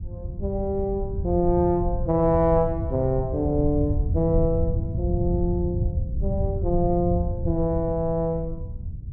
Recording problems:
rumble; below 110 Hz, SNR 4 dB

